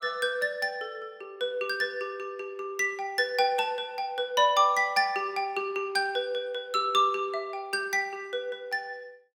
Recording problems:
none

